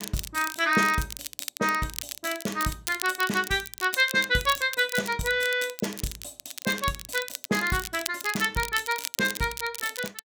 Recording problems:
crackle; vinyl, SNR 9 dB

